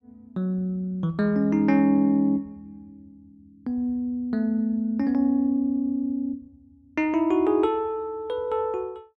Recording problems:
none

